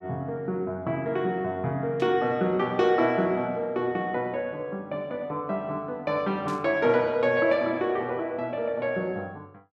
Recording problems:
burst of static; at 2 s and at 6.5 s; peak -13 dB vs average level

